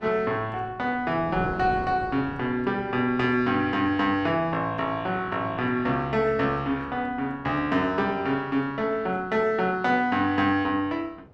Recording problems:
wind on the microphone; below 490 Hz, SNR 18 dB

